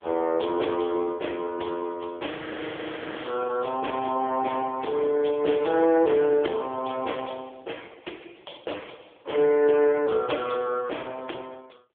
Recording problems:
phone line; 300 Hz to 3.4 kHz, AMR-NB
frozen audio; at 2.5 s for 1 s

